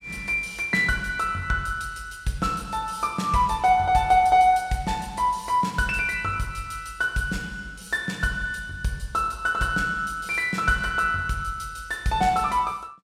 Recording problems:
none

